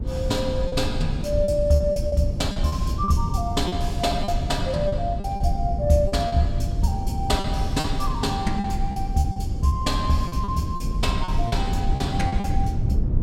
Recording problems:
low-frequency rumble; below 130 Hz, SNR 2 dB
lost packets; 9% of the sound replaced, filled with repeated pitch periods

